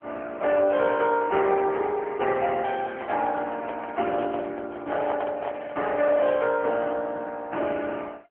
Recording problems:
telephone audio; 260 Hz to 3.3 kHz, AMR-NB
microphone handling noise; from 2.5 to 6.5 s; peak -3 dB vs average level

